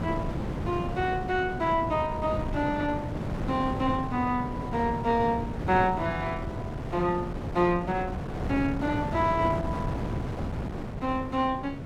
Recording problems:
wind noise; below 400 Hz, SNR 5 dB

